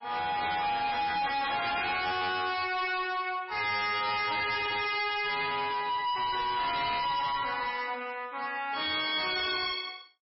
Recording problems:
lossy compression; MP3, log-spectral distance 6 dB, nothing above 5.3 kHz
distortion; hard clipping, signal-to-distortion ratio 6 dB

